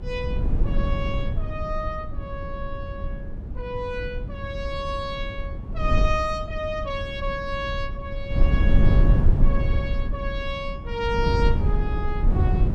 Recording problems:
electrical hum; 50 Hz, harmonics up to 900 Hz, SNR 18 dB
wind noise; below 80 Hz, SNR -4 dB

